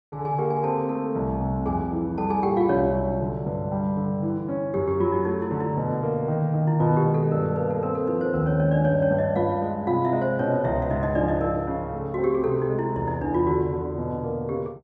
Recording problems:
none

